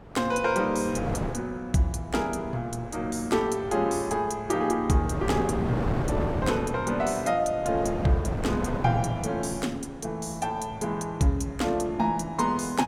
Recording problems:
wind noise; below 570 Hz, SNR 8 dB

